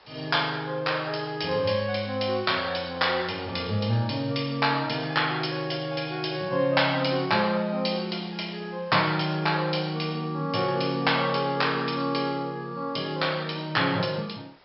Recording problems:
low-pass filter; nothing above 5.4 kHz
background hiss; SNR 27 dB

